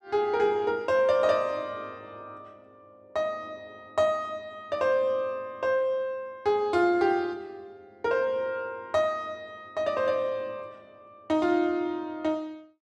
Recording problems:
none

